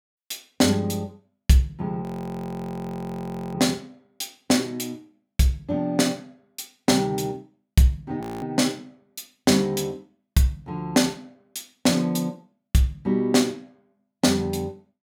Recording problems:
audio freezing; at 2 s for 1.5 s and at 8 s

